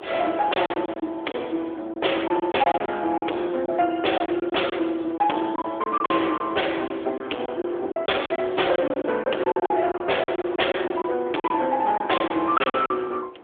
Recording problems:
telephone audio; 260 Hz to 3.4 kHz, AMR-NB
distorted audio; soft clipping, signal-to-distortion ratio 7 dB
wind noise; below 880 Hz, SNR 19 dB
lost packets; 11% of the sound replaced, filled with silence
crackle; from 5.5 to 7.5 s; loose cable, SNR 30 dB

